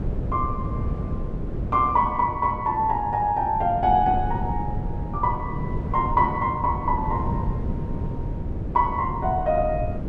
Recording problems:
wind on the microphone; below 200 Hz, SNR 6 dB

